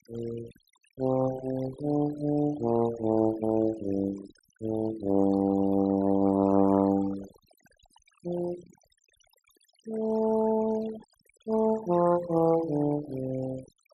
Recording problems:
noise reduction artefacts; signal-to-artefact ratio 17 dB

